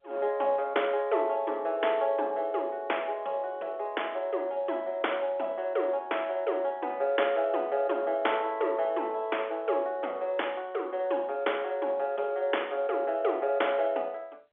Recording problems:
telephone audio; 320 Hz to 3.5 kHz, G.711

